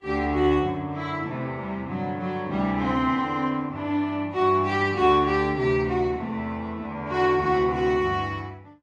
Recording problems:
lossy codec; Vorbis, log-spectral distance 2 dB

